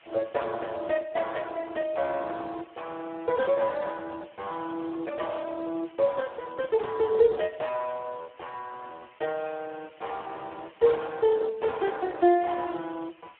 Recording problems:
phone line; 280 Hz to 3.1 kHz, Speex
background hiss; SNR 27 dB

